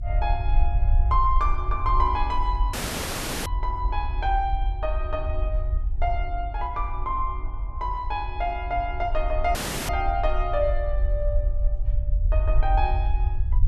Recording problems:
low-frequency rumble; below 56 Hz, SNR -1 dB
audio cutting out; at 2.5 s for 0.5 s and at 9.5 s

